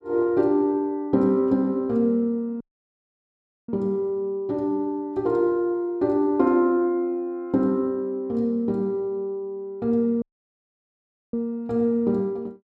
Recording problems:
dropout; at 2.5 s for 1 s and at 10 s for 1 s

